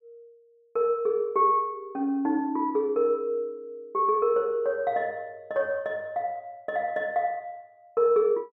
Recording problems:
none

